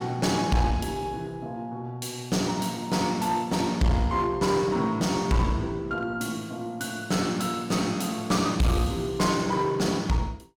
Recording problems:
distorted audio; hard clipping, uneven, signal-to-distortion ratio 10 dB

